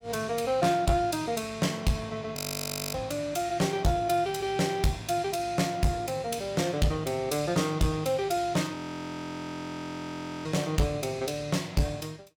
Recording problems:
distortion; soft clipping, signal-to-distortion ratio 12 dB
frozen audio; at 2.5 s for 0.5 s and at 9 s for 1.5 s

